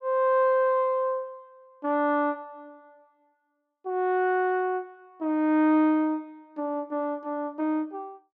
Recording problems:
none

